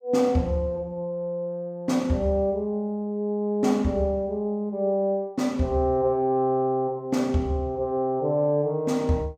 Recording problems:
none

